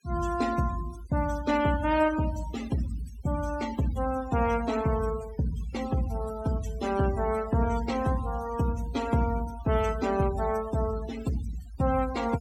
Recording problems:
denoising artefacts; signal-to-artefact ratio 14 dB

